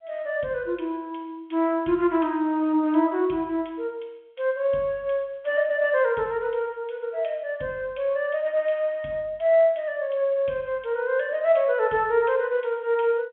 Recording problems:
telephone audio; 130 Hz to 3.7 kHz, G.711

